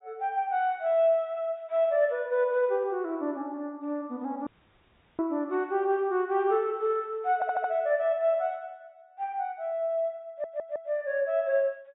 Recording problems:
treble cut off; nothing above 4 kHz
dropout; at 4.5 s for 0.5 s
stutter; at 7.5 s and at 10 s

